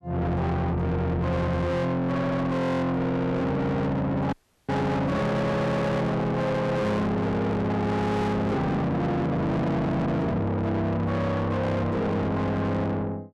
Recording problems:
distorted audio; soft clipping, signal-to-distortion ratio 7 dB
audio cutting out; at 4.5 s

